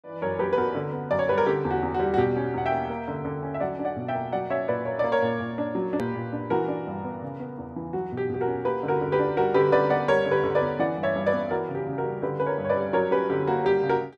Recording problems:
click at an edit; at 6 s

